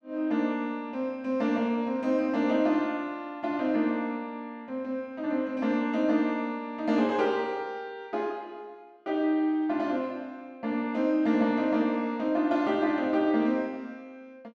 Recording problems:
none

